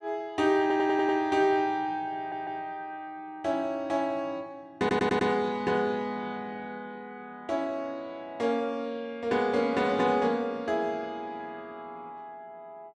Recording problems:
stutter; at 0.5 s, at 2 s and at 5 s

